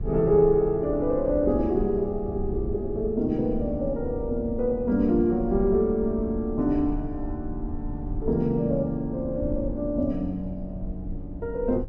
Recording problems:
rumble; below 86 Hz, SNR 11 dB

